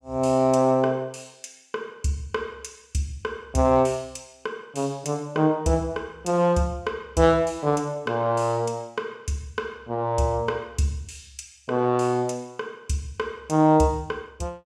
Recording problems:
none

